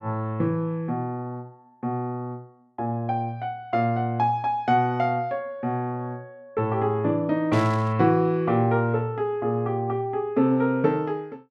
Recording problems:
burst of static; at 7.5 s; peak -9 dB vs average level

